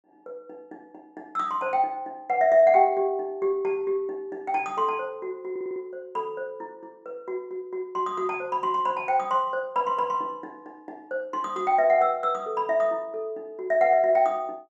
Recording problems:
audio stuttering; at 5.5 s

